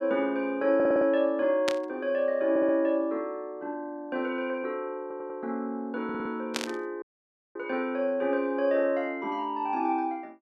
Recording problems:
audio stuttering; 4 times, first at 1 s
burst of static; at 1.5 s and at 6.5 s; peak +3 dB vs average level
audio cutting out; at 7 s for 0.5 s

